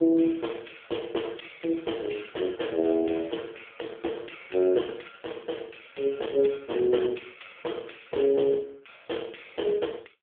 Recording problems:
phone line; 280 Hz to 3.5 kHz, AMR-NB

